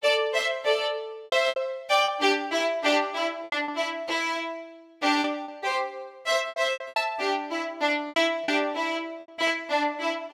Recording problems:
packet loss; 8% of the sound replaced, filled with repeated pitch periods

